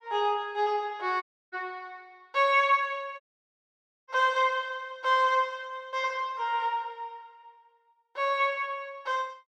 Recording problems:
dropout; at 1 s and at 3 s for 1 s

